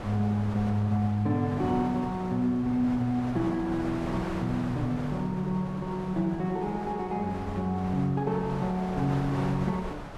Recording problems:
wind noise; below 1.1 kHz, SNR 11 dB

